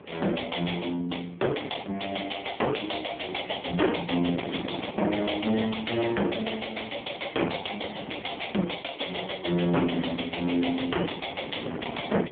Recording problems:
telephone audio; 190 Hz to 3.6 kHz, AMR-NB
distortion; soft clipping, signal-to-distortion ratio 11 dB
wind noise; below 760 Hz, SNR 13 dB

